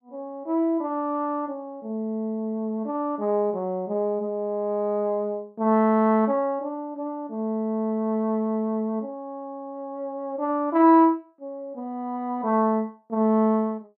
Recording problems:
none

